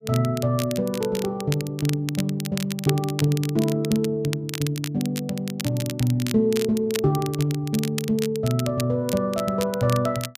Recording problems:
crackling; vinyl, SNR 11 dB

